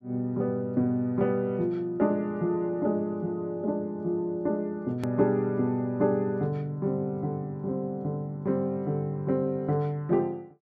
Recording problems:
hard cut with a click; at 5 s

